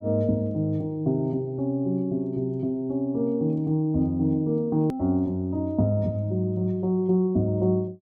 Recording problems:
edit click; at 5 s

